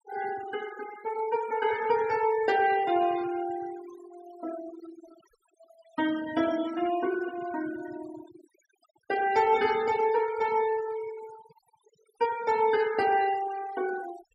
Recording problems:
noise reduction artefacts; signal-to-artefact ratio 16 dB

